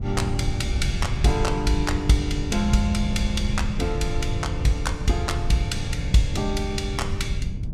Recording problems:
wind noise; below 110 Hz, SNR 3 dB

